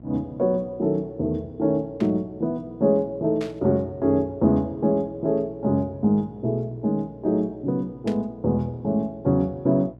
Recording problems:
hum; 60 Hz, harmonics up to 720 Hz, SNR 22 dB
static burst; at 2 s, at 3.5 s and at 8 s; peak -10 dB vs average level

